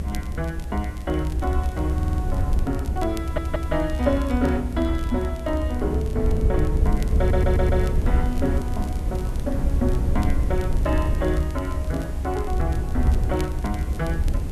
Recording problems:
background hiss; slope -5 dB per octave, SNR 17 dB
low-frequency rumble; below 82 Hz, SNR -2 dB
crackling; vinyl, SNR 21 dB
audio stuttering; at 2 s, at 3 s and at 7 s

